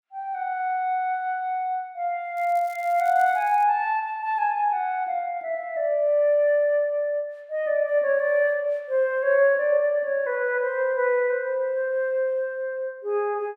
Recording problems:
crackling; from 2.5 to 3.5 s; loose cable, SNR 27 dB

